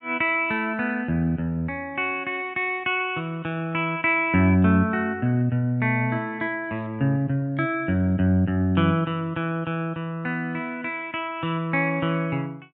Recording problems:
treble missing; nothing above 5.5 kHz

